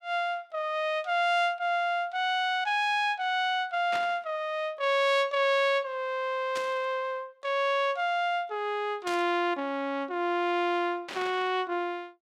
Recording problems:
burst of static; 4 times, first at 4 s; peak -5 dB vs average level

